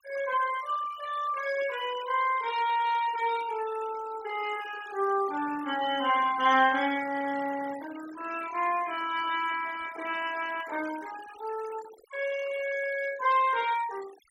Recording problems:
noise reduction artefacts; signal-to-artefact ratio 16 dB

